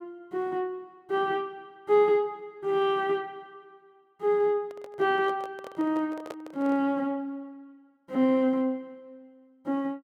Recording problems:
microphone handling noise; from 4.5 to 7 s; peak -7 dB vs average level

